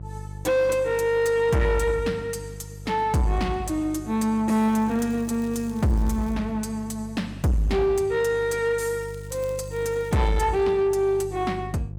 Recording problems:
distorted audio; soft clipping, signal-to-distortion ratio 10 dB
hum; 50 Hz, harmonics up to 500 Hz, SNR 15 dB
crackling; from 4.5 to 6.5 s and from 9 to 10 s; loose cable, SNR 28 dB

